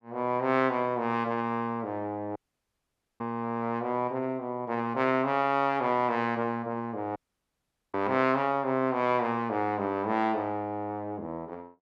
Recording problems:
audio cutting out; at 2.5 s for 1 s and at 7 s for 1 s

